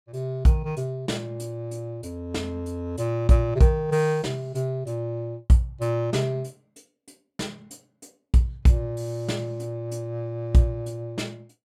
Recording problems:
none

